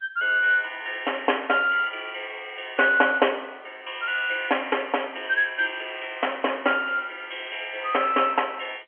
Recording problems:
telephone audio; 320 Hz to 3.2 kHz, G.711

